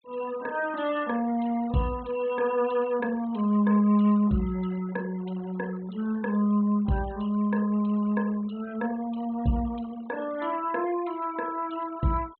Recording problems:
low-pass filter; nothing above 4 kHz
noise reduction artefacts; signal-to-artefact ratio 21 dB

